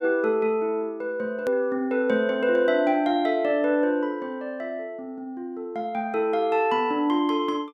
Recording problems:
click at an edit; at 1.5 s

